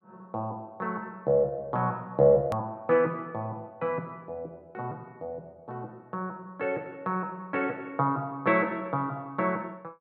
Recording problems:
click at an edit; at 2.5 s

